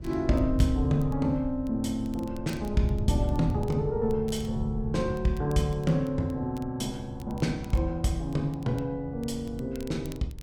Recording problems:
low-frequency rumble; below 110 Hz, SNR 15 dB
wind on the microphone; below 120 Hz, SNR 6 dB
crackle; vinyl, SNR 26 dB

